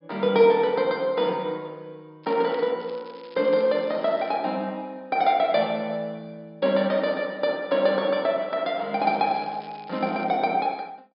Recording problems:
treble cut off; nothing above 5.5 kHz
crackling; at 2 s, from 3 to 4.5 s and from 9 to 10 s; loose cable, SNR 27 dB

